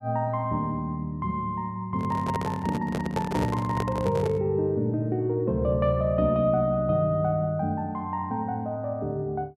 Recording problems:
microphone handling noise; from 2 to 4.5 s; peak 0 dB vs average level

